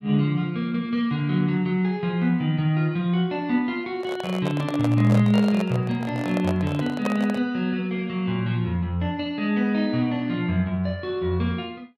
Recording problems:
microphone handling noise; from 4 to 7.5 s; peak 0 dB vs average level

